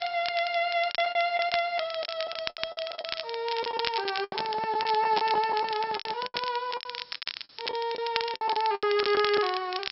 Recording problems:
treble missing; nothing above 5.4 kHz
hiss; SNR 22 dB
crackling; vinyl, SNR 7 dB
packet loss; 14% of the sound replaced, filled with the last packet
microphone handling noise; from 4 to 6.5 s; peak -6 dB vs average level

